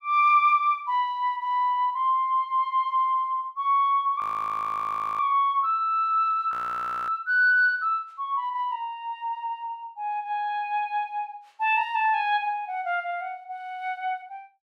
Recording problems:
frozen audio; at 4 s for 1 s and at 6.5 s for 0.5 s

